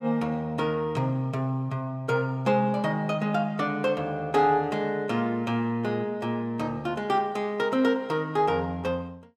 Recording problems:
none

